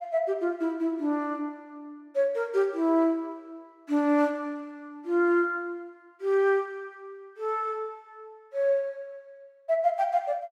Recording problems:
none

